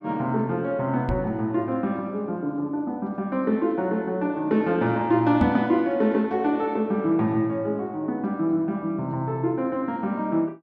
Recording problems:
knock on the microphone; at 1 s and at 5.5 s; peak +1 dB vs average level

